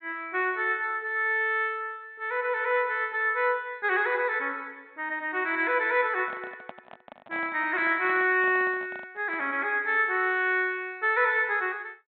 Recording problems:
treble missing; nothing above 4 kHz
handling noise; from 6 to 9.5 s; peak -10 dB vs average level

